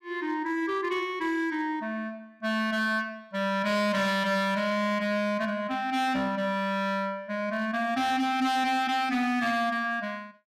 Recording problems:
distorted audio; hard clipping, signal-to-distortion ratio 11 dB

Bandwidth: 15.5 kHz